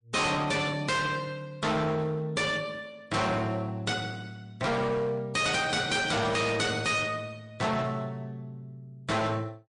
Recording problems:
lossy compression; MP3, log-spectral distance 3 dB, nothing above 9 kHz
distorted audio; hard clipping, signal-to-distortion ratio 6 dB

